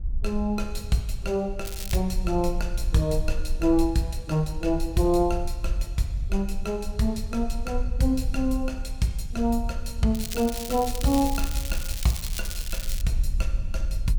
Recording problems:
wind on the microphone; below 54 Hz, SNR 6 dB
crackle; at 1.5 s and from 10 to 13 s; loose cable, SNR 8 dB

